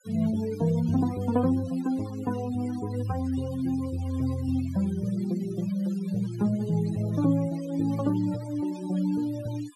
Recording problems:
noise reduction artefacts; signal-to-artefact ratio 19 dB

